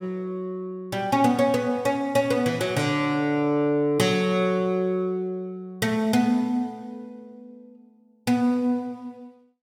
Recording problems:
none

